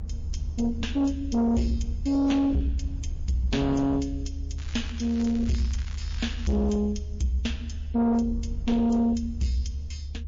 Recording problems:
lossy codec; MP3, log-spectral distance 2 dB, nothing above 6.3 kHz
distorted audio; soft clipping, signal-to-distortion ratio 11 dB
low-frequency rumble; below 74 Hz, strongest tone 72 Hz, SNR 8 dB
crackling; from 4.5 to 6.5 s; loose cable, SNR 20 dB

